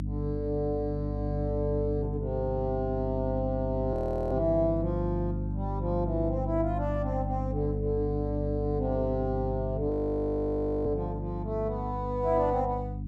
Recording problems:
hum; 50 Hz, harmonics up to 300 Hz, SNR 3 dB
audio freezing; at 4 s and at 10 s for 1 s

